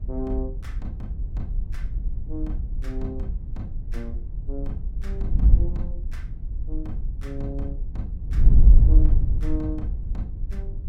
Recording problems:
mains hum; 60 Hz, harmonics up to 360 Hz, SNR 22 dB
wind noise; below 56 Hz, SNR -10 dB

